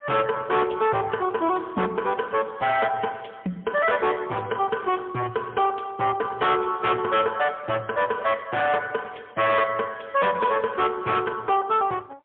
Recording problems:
phone line; 150 Hz to 3.7 kHz, AMR-NB, then MP3
distorted audio; hard clipping, signal-to-distortion ratio 7 dB

